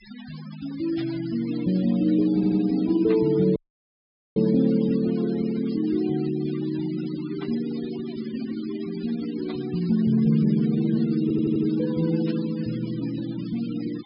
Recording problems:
treble missing; nothing above 5.5 kHz
noise reduction artefacts; signal-to-artefact ratio 21 dB
static burst; 5 times, first at 1 s; peak -12 dB vs average level
stutter; at 2.5 s and at 11 s
audio cutting out; at 3.5 s for 1 s

